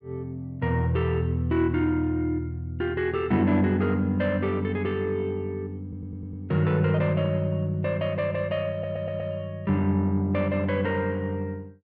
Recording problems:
stutter; at 6 s and at 8.5 s

